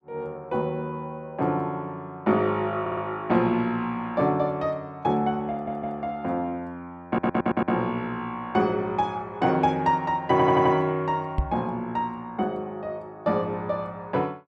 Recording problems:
stutter; 4 times, first at 3 s
microphone bump; at 11 s; peak +4 dB vs average level

